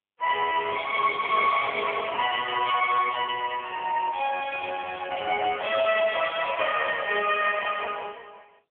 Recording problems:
phone line; 370 Hz to 3.2 kHz, AMR-NB

